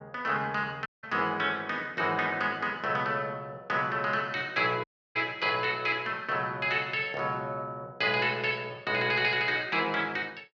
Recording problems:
audio cutting out; at 1 s and at 5 s

